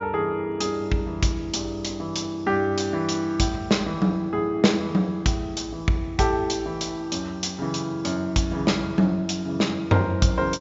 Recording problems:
treble missing; nothing above 7.5 kHz

